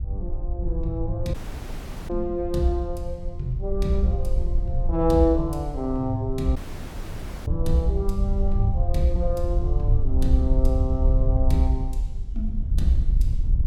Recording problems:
wind on the microphone; below 64 Hz, SNR 0 dB
audio cutting out; at 1.5 s for 0.5 s and at 6.5 s for 1 s

